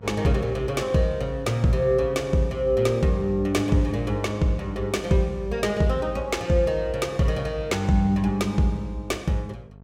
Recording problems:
electrical hum; 50 Hz, harmonics up to 1.1 kHz, SNR 23 dB

